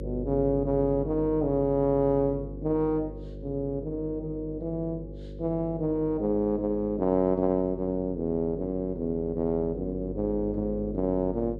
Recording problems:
hum; 50 Hz, harmonics up to 550 Hz, SNR 11 dB

